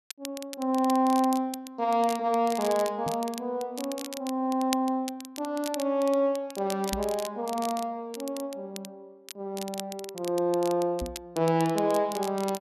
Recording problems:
crackling; vinyl, SNR 14 dB
microphone thump; at 3 s, at 7 s and at 11 s; peak -2 dB vs average level

